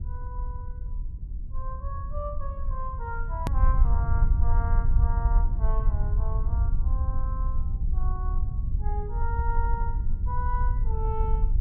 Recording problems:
low-frequency rumble; below 66 Hz, SNR -9 dB
hard cut with a click; at 3.5 s

